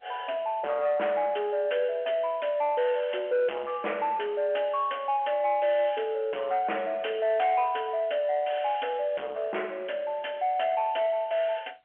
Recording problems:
phone line; 340 Hz to 3.2 kHz, G.711
distortion; soft clipping, signal-to-distortion ratio 9 dB

